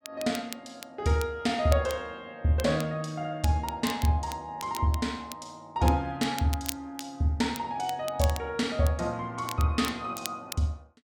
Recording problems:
crackling; vinyl, SNR 13 dB

